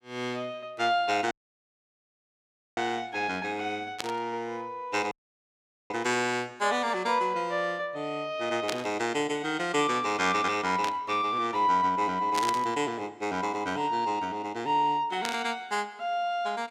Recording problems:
audio cutting out; at 1.5 s for 1.5 s and at 5 s for 1 s
static burst; 5 times, first at 4 s; peak +1 dB vs average level

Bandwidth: 16.5 kHz